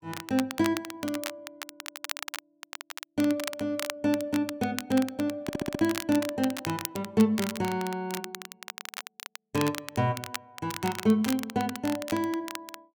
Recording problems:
crackling; vinyl, SNR 9 dB
stutter; at 5.5 s

